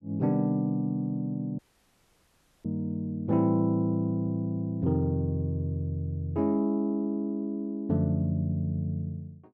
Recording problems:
dropout; at 1.5 s for 1 s

